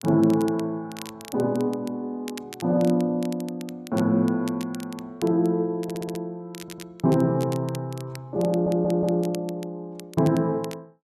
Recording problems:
crackle; vinyl, SNR 19 dB
audio stuttering; at 6 s, at 6.5 s and at 8.5 s

